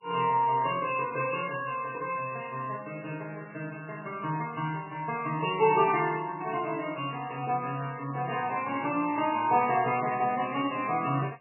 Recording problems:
codec artefacts; MP3, log-spectral distance 4 dB, nothing above 2.4 kHz

